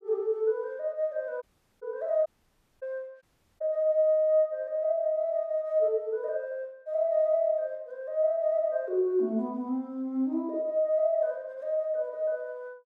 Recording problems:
dropout; at 1.5 s, at 2.5 s for 0.5 s and at 3 s

